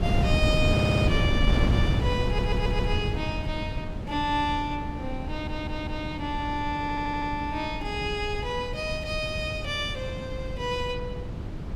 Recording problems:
wind on the microphone; below 210 Hz, SNR 0 dB
audio stuttering; 4 times, first at 0.5 s

